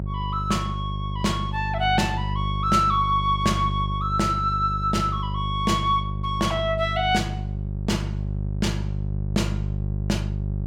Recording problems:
hum; 50 Hz, harmonics up to 400 Hz, SNR 4 dB

